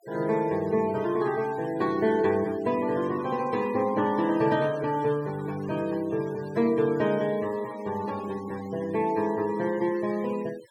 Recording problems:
denoising artefacts; signal-to-artefact ratio 20 dB

